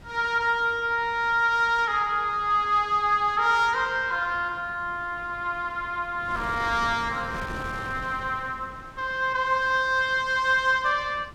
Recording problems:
wind on the microphone; below 830 Hz, SNR 19 dB

